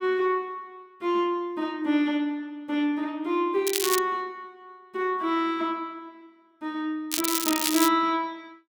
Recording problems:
crackling; at 3.5 s and at 7 s; loose cable, SNR 0 dB

